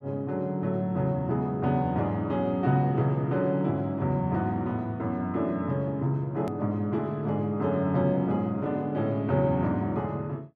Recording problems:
hard cut with a click; at 6.5 s

